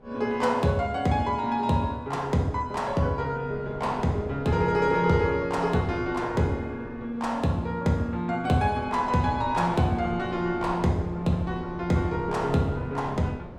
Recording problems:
wind noise; below 540 Hz, SNR 16 dB

